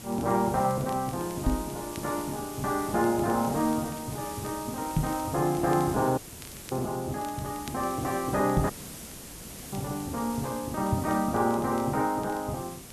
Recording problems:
background hiss; SNR 11 dB
crackling; vinyl, SNR 25 dB
microphone bump; 4 times, first at 1.5 s; peak +6 dB vs average level
dropout; at 6 s for 0.5 s and at 8.5 s for 1 s

